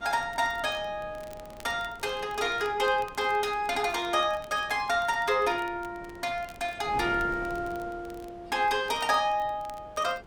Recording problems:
wind on the microphone; below 610 Hz, SNR 19 dB
crackling; vinyl, SNR 26 dB

